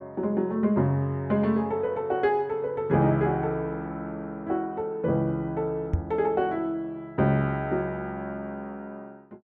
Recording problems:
microphone thump; at 6 s; peak +6 dB vs average level

